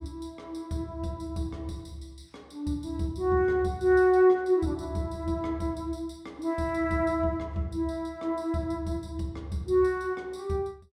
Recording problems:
none

